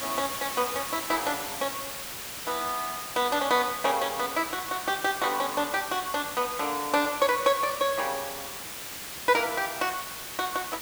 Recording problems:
hiss; slope -1 dB per octave, SNR 7 dB

